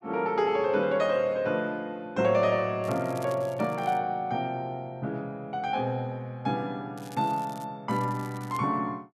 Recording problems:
crackle; from 3 to 4 s, at 7 s and at 8 s; loose cable, SNR 23 dB

